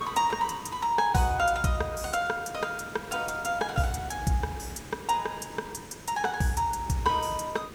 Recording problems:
background hiss; SNR 16 dB

